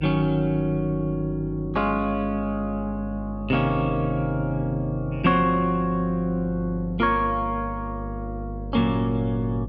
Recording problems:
hum; 50 Hz, harmonics up to 600 Hz, SNR 11 dB

